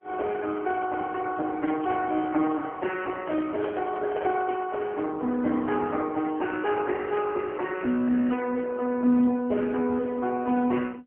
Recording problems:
telephone audio; 220 Hz to 3 kHz, AMR-NB
microphone handling noise; from 3 to 4.5 s; peak -1 dB vs average level

